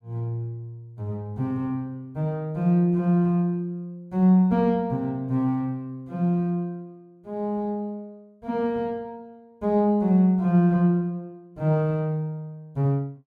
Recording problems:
none

